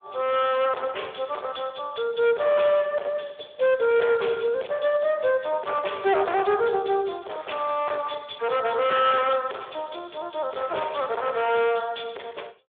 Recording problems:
phone line; 340 Hz to 3.5 kHz, Speex
distortion; hard clipping, uneven, signal-to-distortion ratio 6 dB

